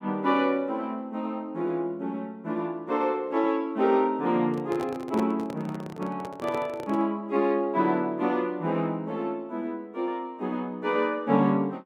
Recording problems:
handling noise; from 4.5 to 7 s; peak -3 dB vs average level

